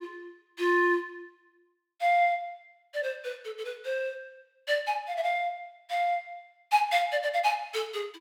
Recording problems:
none

